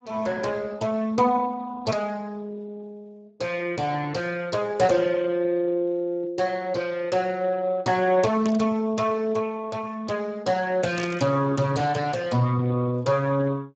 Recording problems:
lossy compression; Speex, log-spectral distance 3 dB, nothing above 7.6 kHz
static burst; at 8.5 s and at 11 s; peak -3 dB vs average level

